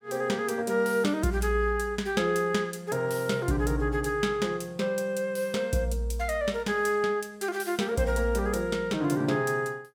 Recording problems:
none

